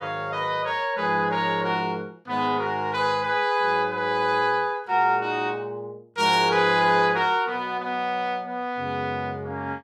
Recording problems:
none

